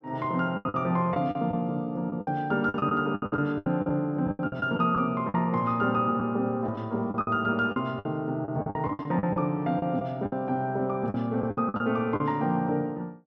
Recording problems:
lost packets; 13% of the sound replaced, filled with the last packet

